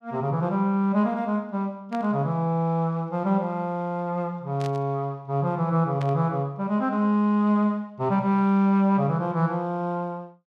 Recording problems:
static burst; at 2 s, at 4.5 s and at 6 s; peak -12 dB vs average level

